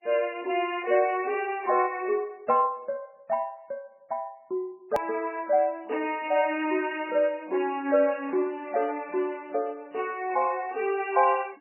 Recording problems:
codec artefacts; MP3, log-spectral distance 3 dB, nothing above 2.6 kHz
edit click; at 5 s

